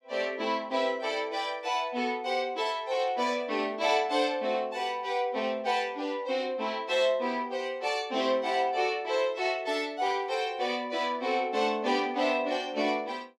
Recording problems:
burst of static; at 10 s; peak -13 dB vs average level

